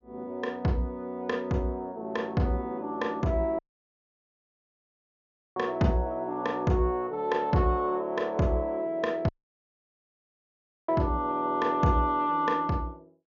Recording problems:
low-pass filter; nothing above 7 kHz
audio cutting out; at 3.5 s for 2 s and at 9.5 s for 1.5 s

